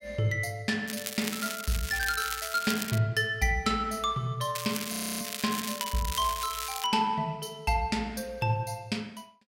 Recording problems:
crackle; from 1 to 3 s and from 4.5 to 7 s; loose cable, SNR 6 dB
frozen audio; at 5 s

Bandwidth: 16 kHz